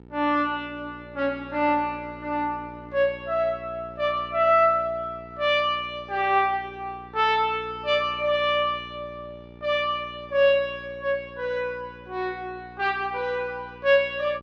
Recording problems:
hum; 60 Hz, harmonics up to 1.4 kHz, SNR 21 dB

